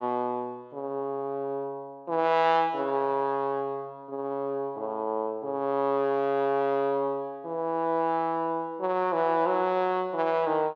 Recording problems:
treble cut off; nothing above 7.8 kHz

